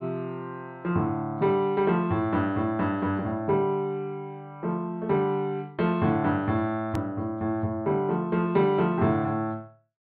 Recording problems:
low-pass filter; nothing above 4.6 kHz
edit click; at 7 s

